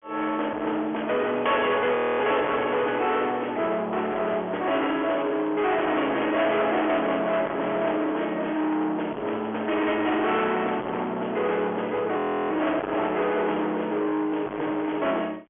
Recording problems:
phone line; 370 Hz to 3.4 kHz, G.726
distorted audio; soft clipping, signal-to-distortion ratio 8 dB
audio freezing; at 2 s and at 12 s

